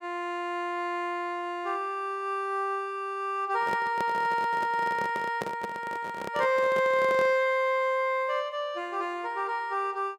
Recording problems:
handling noise; from 3.5 to 7.5 s; peak -2 dB vs average level

